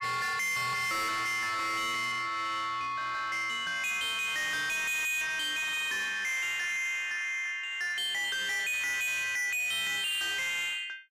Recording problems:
distorted audio; soft clipping, signal-to-distortion ratio 6 dB

